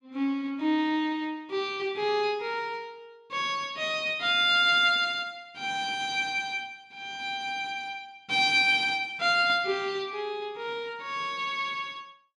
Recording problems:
none

